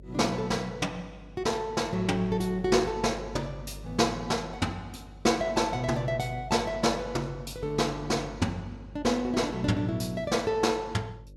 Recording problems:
hum; 50 Hz, harmonics up to 550 Hz, SNR 18 dB

